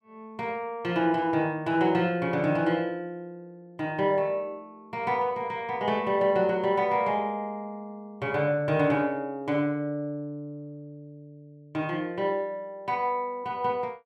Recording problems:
none

